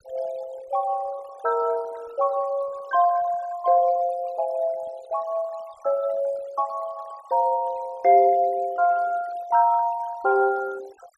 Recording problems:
denoising artefacts; signal-to-artefact ratio 23 dB

